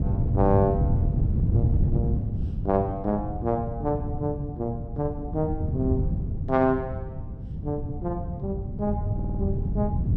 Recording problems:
wind on the microphone; below 150 Hz, SNR 0 dB
audio stuttering; at 9 s

